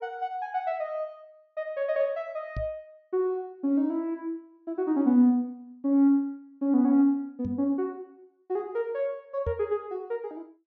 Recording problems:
treble missing; nothing above 6.9 kHz
microphone thump; at 2.5 s, at 7.5 s and at 9.5 s; peak -2 dB vs average level

